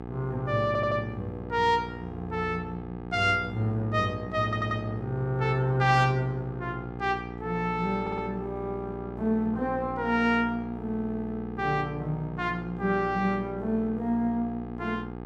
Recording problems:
hum; 60 Hz, harmonics up to 1.7 kHz, SNR 10 dB
stutter; at 0.5 s, at 4.5 s and at 8 s

